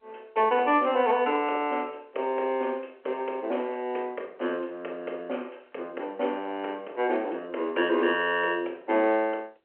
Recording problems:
telephone audio; 300 Hz to 3.1 kHz, G.711

